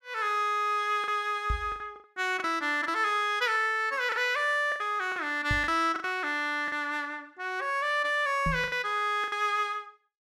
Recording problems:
packet loss; 8% of the sound replaced, filled with the last packet
microphone bump; at 1.5 s, at 5.5 s and at 8.5 s; peak 0 dB vs average level

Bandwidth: 14.5 kHz